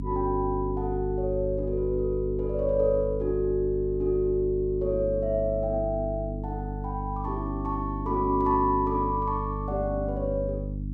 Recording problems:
electrical hum; 50 Hz, harmonics up to 300 Hz, SNR 6 dB

